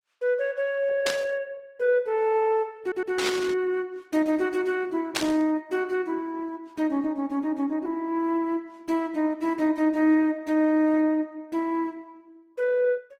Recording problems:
lossy compression; Opus, log-spectral distance 2 dB, nothing above 19.5 kHz
static burst; at 1 s, at 3 s and at 5 s; peak +4 dB vs average level
stutter; at 3 s

